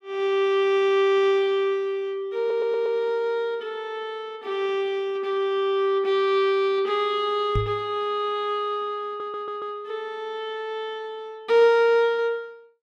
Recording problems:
stutter; at 2.5 s and at 9 s
microphone thump; at 7.5 s; peak +1 dB vs average level

